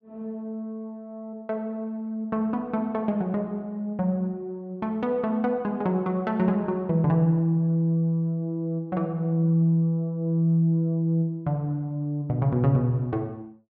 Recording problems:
none

